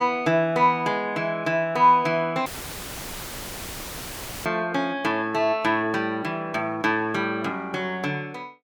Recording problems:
audio cutting out; at 2.5 s for 2 s; filled with static

